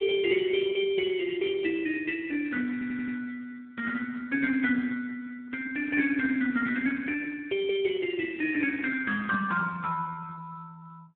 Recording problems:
phone line; 280 Hz to 3.5 kHz, Speex
audio stuttering; at 2.5 s

